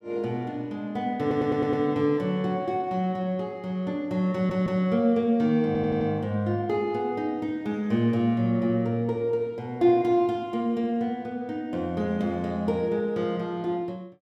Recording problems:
stutter; at 1 s, at 4.5 s and at 5.5 s

